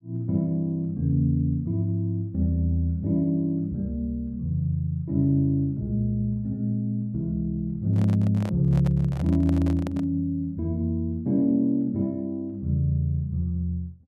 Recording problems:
handling noise; from 8 to 10 s; peak -8 dB vs average level

